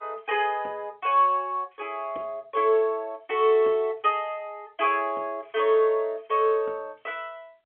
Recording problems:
phone line; 280 Hz to 3.3 kHz, G.711

